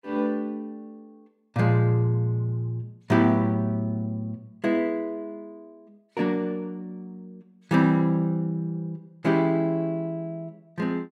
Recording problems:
none

